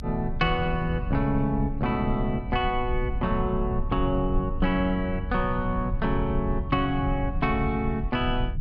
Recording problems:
low-frequency rumble; below 90 Hz, SNR 6 dB

